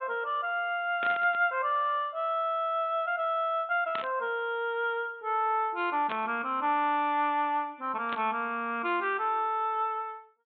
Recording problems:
treble cut off; nothing above 4 kHz
burst of static; 4 times, first at 1 s; peak -4 dB vs average level

